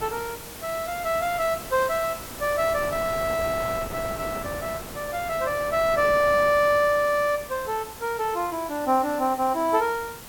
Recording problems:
background hiss; slope 0 dB per octave, SNR 15 dB
wind on the microphone; below 920 Hz, SNR 15 dB

